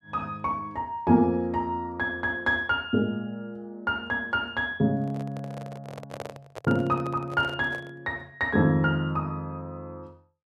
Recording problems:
handling noise; from 5 to 8 s; peak -5 dB vs average level

